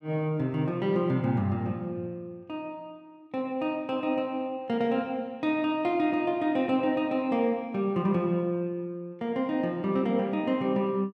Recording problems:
none

